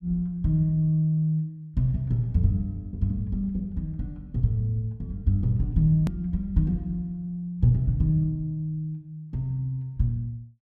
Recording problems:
click at an edit; at 6 s

